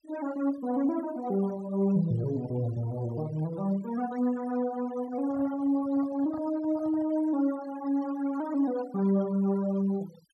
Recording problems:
noise reduction artefacts; signal-to-artefact ratio 20 dB
microphone handling noise; from 5 to 7 s; peak -14 dB vs average level

